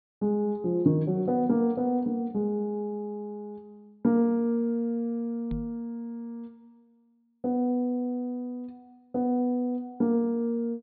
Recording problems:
low-pass filter; nothing above 4.5 kHz
microphone bump; at 5.5 s; peak -4 dB vs average level

